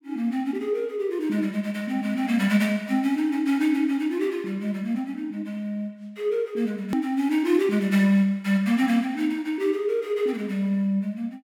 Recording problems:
hard cut with a click; at 7 s

